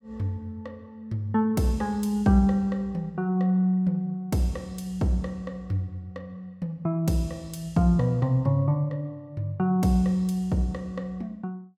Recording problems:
none

